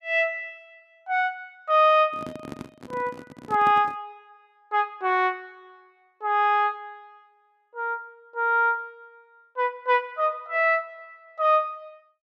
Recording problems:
handling noise; from 2 to 4 s; peak -9 dB vs average level

